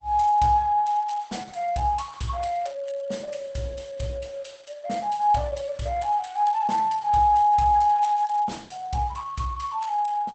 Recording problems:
codec artefacts; Opus, log-spectral distance 3 dB, nothing above 8.2 kHz

